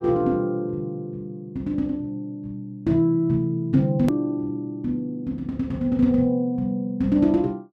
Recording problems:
edit click; at 4 s

